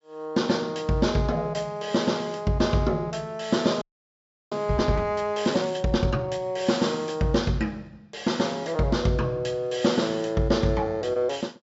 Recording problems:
low-pass filter; nothing above 8 kHz
frozen audio; at 4 s for 0.5 s

